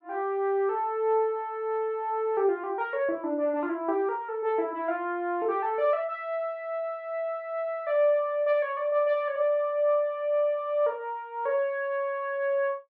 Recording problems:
none

